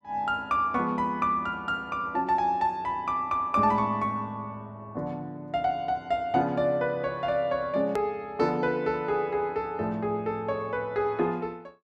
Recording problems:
click at an edit; at 8 s

